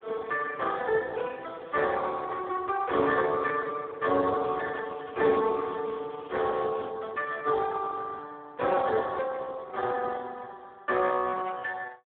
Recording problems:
telephone audio; 260 Hz to 3.5 kHz, Speex
crackle; from 4.5 to 7 s; loose cable, SNR 27 dB

